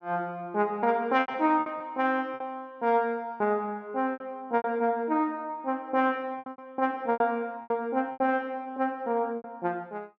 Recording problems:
packet loss; 9% of the sound replaced, filled with repeated pitch periods

